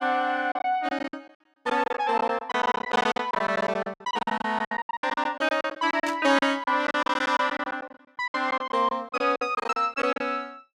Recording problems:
lost packets; 19% of the sound replaced, filled with silence
static burst; at 6 s; peak -6 dB vs average level

